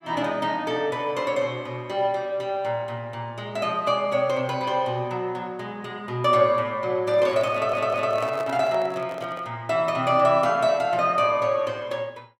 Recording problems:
microphone handling noise; from 7 to 9.5 s; peak -5 dB vs average level
stutter; at 7.5 s

